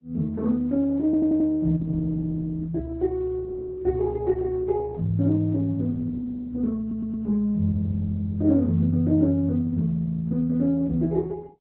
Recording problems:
lossy compression; AAC, then Opus, log-spectral distance 2 dB, nothing above 3.9 kHz
stutter; at 1 s and at 7 s

